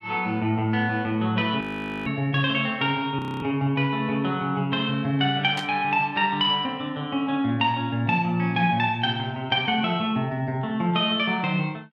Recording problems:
audio freezing; at 1.5 s and at 3 s
static burst; at 5.5 s; peak -5 dB vs average level

